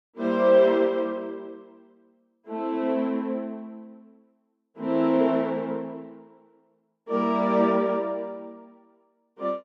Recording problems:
none

